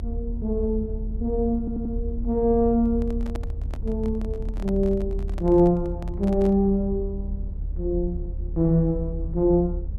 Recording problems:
low-frequency rumble; below 74 Hz, strongest tone 40 Hz, SNR 7 dB
audio stuttering; at 1.5 s
handling noise; from 3 to 6.5 s; peak -9 dB vs average level

